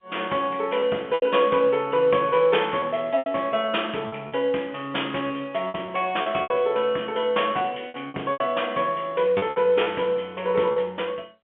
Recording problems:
telephone audio; 300 Hz to 3.5 kHz, G.711
packet loss; 8% of the sound replaced, filled with repeated pitch periods

